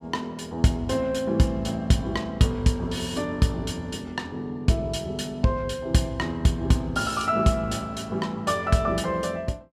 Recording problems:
none

